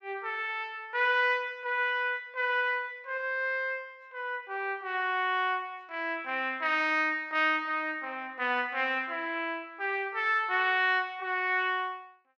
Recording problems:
none

